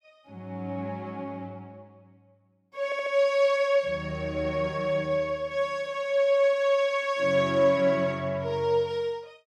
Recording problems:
audio stuttering; at 3 s

